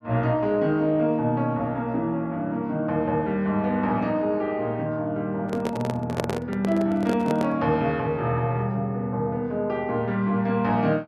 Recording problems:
microphone handling noise; from 5.5 to 7.5 s; peak +2 dB vs average level

